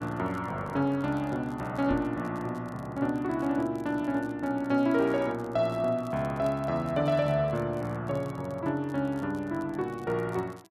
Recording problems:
crackle; vinyl, SNR 29 dB
microphone thump; at 2 s; peak -1 dB vs average level

